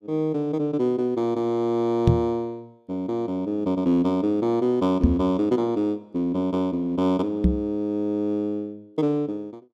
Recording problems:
knock on the microphone; at 2 s, at 5 s and at 7.5 s; peak +8 dB vs average level

